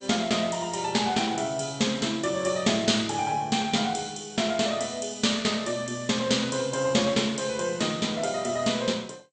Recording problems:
lossy codec; MP2, then Vorbis, log-spectral distance 5 dB, nothing above 8.2 kHz

